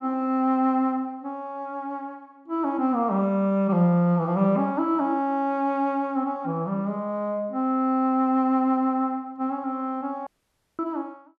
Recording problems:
dropout; at 10 s for 0.5 s

